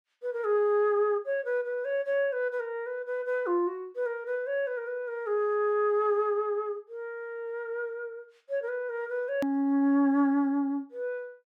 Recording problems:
hard cut with a click; at 9.5 s

